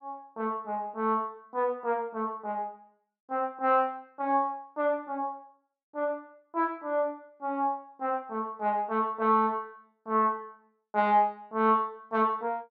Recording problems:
none

